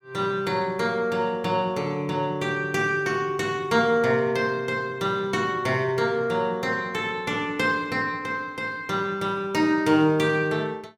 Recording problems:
none

